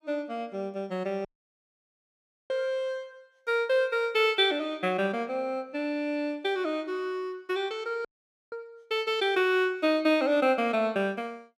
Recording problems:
audio cutting out; at 1.5 s for 1.5 s and at 8 s

